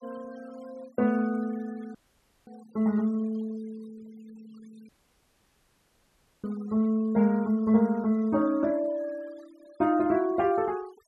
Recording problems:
noise reduction artefacts; signal-to-artefact ratio 26 dB
dropout; at 2 s for 0.5 s and at 5 s for 1.5 s

